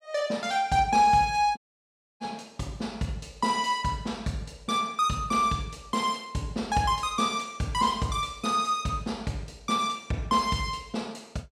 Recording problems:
dropout; at 1.5 s for 0.5 s

